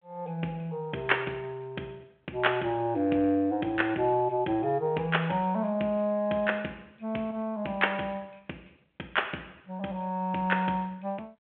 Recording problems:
telephone audio; 260 Hz to 3.3 kHz, G.726

